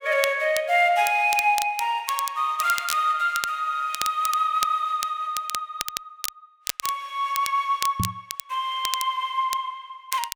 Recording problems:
crackling; vinyl, SNR 9 dB
microphone bump; at 8 s; peak +1 dB vs average level

